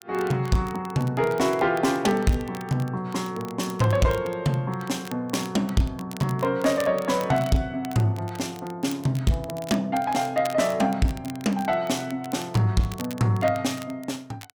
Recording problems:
distortion; soft clipping, signal-to-distortion ratio 10 dB
crackle; vinyl, SNR 19 dB

